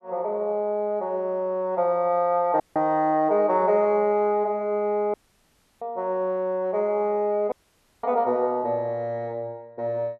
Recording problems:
dropout; at 2.5 s, at 5 s for 0.5 s and at 7.5 s for 0.5 s

